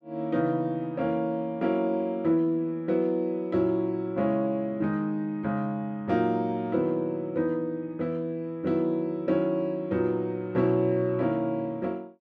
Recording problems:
none

